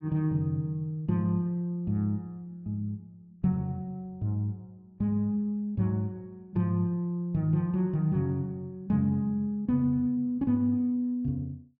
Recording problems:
treble missing; nothing above 8 kHz

